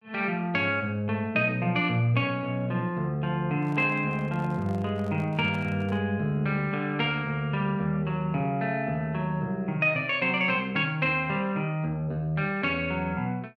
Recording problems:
microphone handling noise; from 3.5 to 6 s; peak -11 dB vs average level

